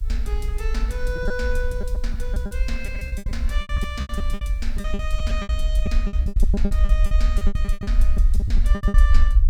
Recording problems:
hiss; SNR 28 dB
rumble; below 56 Hz, SNR -8 dB
lost packets; 18% of the sound replaced, filled with repeated pitch periods

